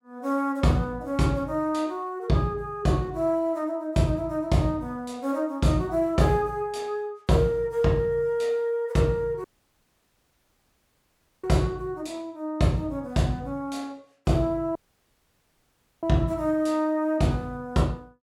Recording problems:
dropout; at 9.5 s for 2 s and at 15 s for 1.5 s

